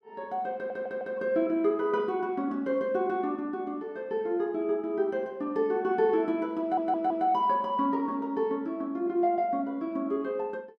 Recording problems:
audio stuttering; at 0.5 s and at 6.5 s

